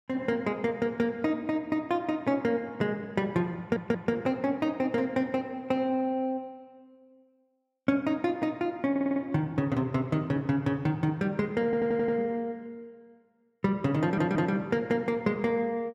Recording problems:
audio stuttering; 4 times, first at 3.5 s

